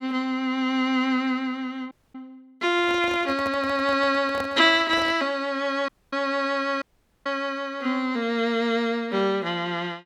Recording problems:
audio cutting out; at 2 s, at 6 s and at 7 s
handling noise; from 2.5 to 5 s; peak -6 dB vs average level

